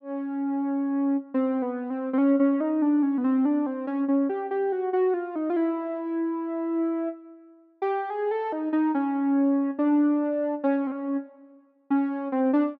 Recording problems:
none

